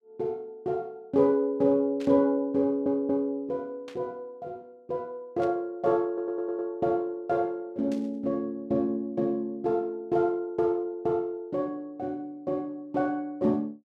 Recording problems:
static burst; 4 times, first at 2 s; peak -13 dB vs average level
stutter; at 2.5 s and at 6 s

